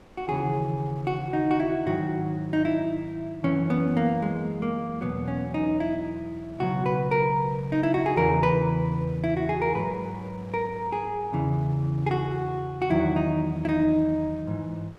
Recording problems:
wind on the microphone; below 950 Hz, SNR 24 dB

